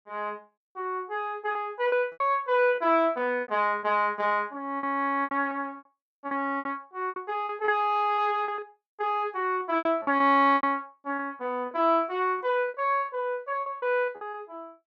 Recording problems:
packet loss; 12% of the sound replaced, filled with repeated pitch periods

